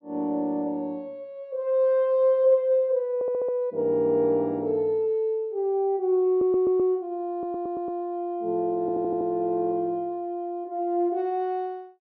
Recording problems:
audio stuttering; 4 times, first at 3 s

